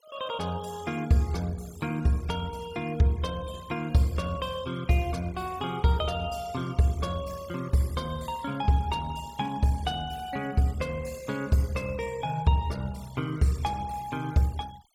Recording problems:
denoising artefacts; signal-to-artefact ratio 21 dB

